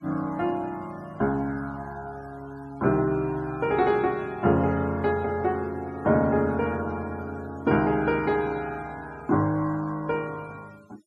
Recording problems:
noise reduction artefacts; signal-to-artefact ratio 26 dB

